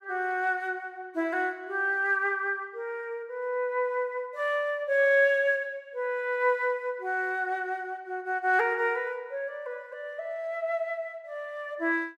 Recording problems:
none

